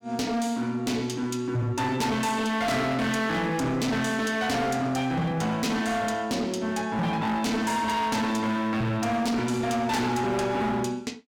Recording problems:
distorted audio; hard clipping, signal-to-distortion ratio 8 dB

